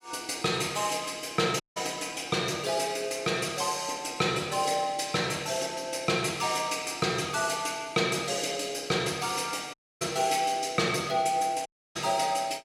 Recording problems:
audio cutting out; at 1.5 s, at 9.5 s and at 12 s

